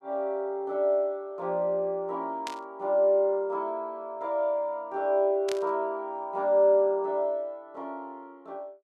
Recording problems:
burst of static; at 2.5 s and at 5.5 s; peak -6 dB vs average level

